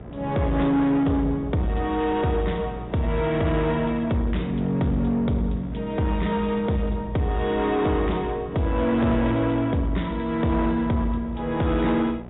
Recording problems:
treble cut off; nothing above 3.7 kHz
distorted audio; soft clipping, signal-to-distortion ratio 11 dB
hum; 60 Hz, harmonics up to 2 kHz, SNR 18 dB
wind noise; below 520 Hz, SNR 20 dB

